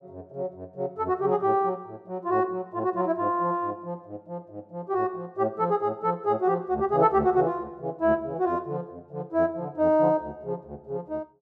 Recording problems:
none

